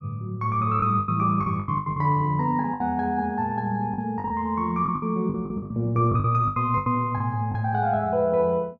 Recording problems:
lost packets; 12% of the sound replaced, filled with the last packet

